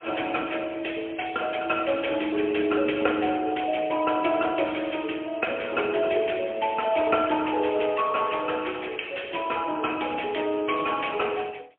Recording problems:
telephone audio; 260 Hz to 3.3 kHz, AMR-NB, then MP3

